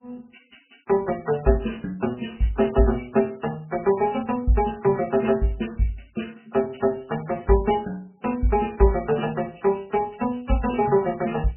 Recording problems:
lossy codec; MP3, log-spectral distance 6 dB, nothing above 3 kHz

